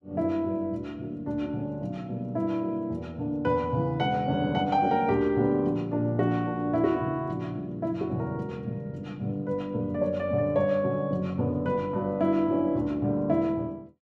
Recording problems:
none

